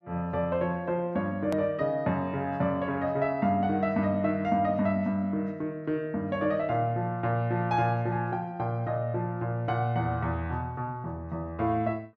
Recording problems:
edit click; at 1.5 s

